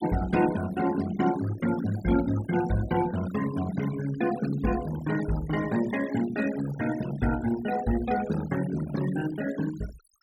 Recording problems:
noise reduction artefacts; signal-to-artefact ratio 13 dB

